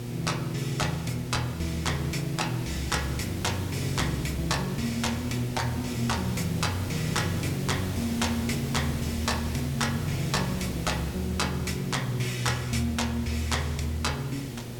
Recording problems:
hum; 60 Hz, harmonics up to 840 Hz, SNR 10 dB
background hiss; SNR 9 dB

